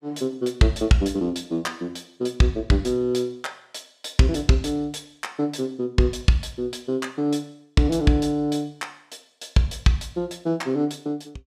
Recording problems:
none

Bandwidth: 15.5 kHz